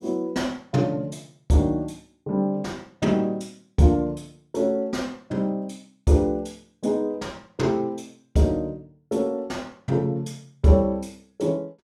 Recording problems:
none

